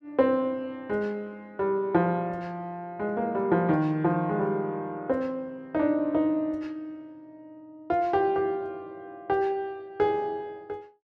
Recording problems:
none

